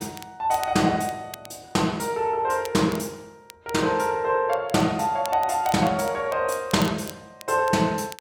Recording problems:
crackling; vinyl, SNR 20 dB

